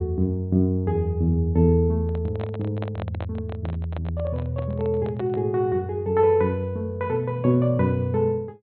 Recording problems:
treble cut off; nothing above 4.2 kHz
microphone handling noise; from 2 to 5.5 s; peak -6 dB vs average level

